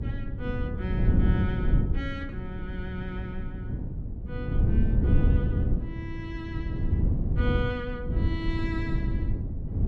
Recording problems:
hum; 50 Hz, harmonics up to 300 Hz, SNR 14 dB
wind on the microphone; below 130 Hz, SNR -8 dB

